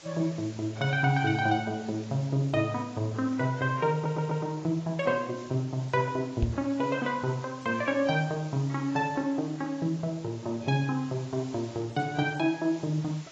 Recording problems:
lossy compression; AAC, log-spectral distance 7 dB
background hiss; slope 0 dB per octave, SNR 21 dB
stutter; at 4 s
knock on the microphone; at 6.5 s; peak +5 dB vs average level

